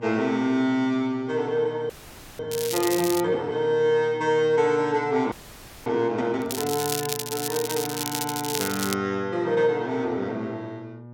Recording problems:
hum; 60 Hz, harmonics up to 1.2 kHz, SNR 18 dB
audio freezing; at 2 s and at 5.5 s for 0.5 s
crackle; at 2.5 s and from 6.5 to 9 s; loose cable, SNR 5 dB

